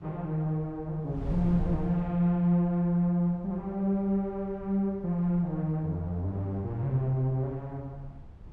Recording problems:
wind noise; below 130 Hz, SNR 15 dB

